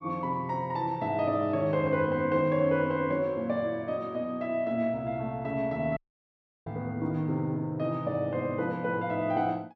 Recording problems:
dropout; at 6 s for 0.5 s

